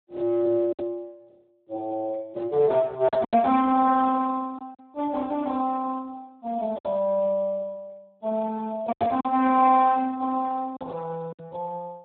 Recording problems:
telephone audio; 190 Hz to 2 kHz, Speex
packet loss; 5% of the sound replaced, filled with silence

